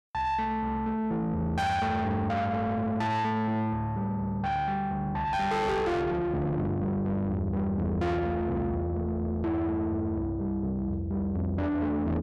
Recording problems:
distorted audio; soft clipping, signal-to-distortion ratio 8 dB

